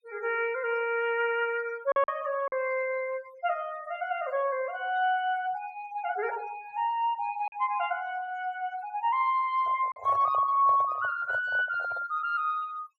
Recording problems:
denoising artefacts; signal-to-artefact ratio 21 dB
lost packets; 1.6% of the sound replaced, filled with silence
handling noise; from 9.5 to 12 s; peak -5 dB vs average level

